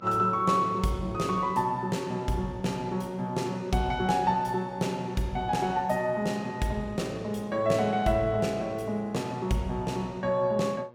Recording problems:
electrical hum; 60 Hz, harmonics up to 1.7 kHz, SNR 25 dB

